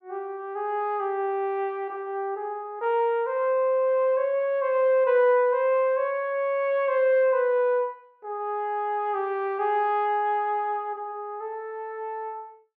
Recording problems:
none

